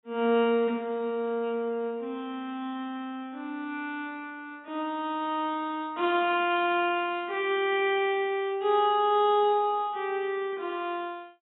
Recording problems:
treble cut off; nothing above 4 kHz

